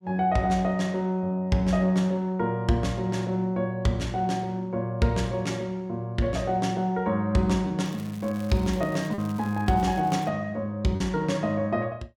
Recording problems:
packet loss; 1% of the sound replaced, filled with repeated pitch periods
crackle; from 8 to 10 s; loose cable, SNR 23 dB

